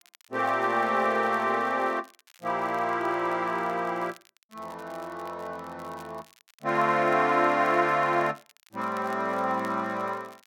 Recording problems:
crackle; vinyl, SNR 29 dB

